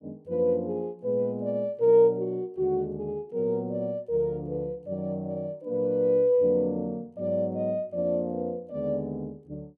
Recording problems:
none

